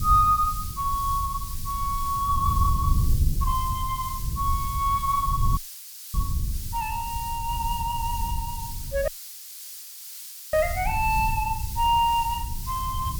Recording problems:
hiss; slope +7 dB per octave, SNR 10 dB
wind on the microphone; below 96 Hz, SNR 5 dB
audio cutting out; at 5.5 s for 0.5 s and at 9 s for 1.5 s

